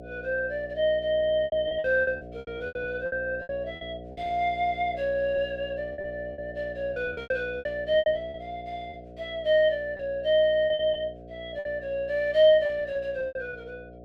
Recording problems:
hum; 60 Hz, harmonics up to 720 Hz, SNR 16 dB
lost packets; 12% of the sound replaced, filled with repeated pitch periods

